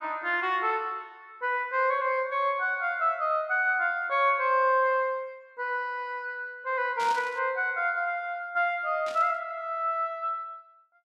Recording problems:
burst of static; at 7 s and at 9 s; peak -8 dB vs average level

